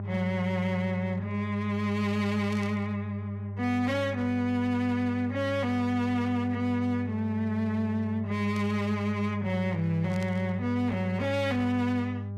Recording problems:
distortion; hard clipping, uneven, signal-to-distortion ratio 10 dB
hum; 50 Hz, harmonics up to 800 Hz, SNR 6 dB
burst of static; at 2.5 s, at 8.5 s and at 10 s; peak -11 dB vs average level

